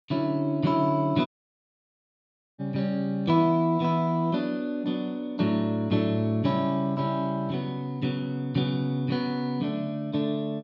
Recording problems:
dropout; at 1.5 s for 1.5 s

